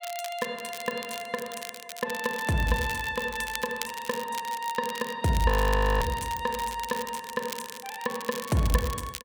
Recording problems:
crackle; vinyl, SNR 10 dB
frozen audio; at 5.5 s for 0.5 s

